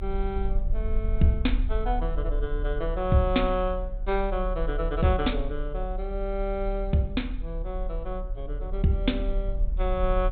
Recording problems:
low-pass filter; nothing above 4 kHz
low-frequency rumble; below 40 Hz, strongest tone 36 Hz, SNR 3 dB

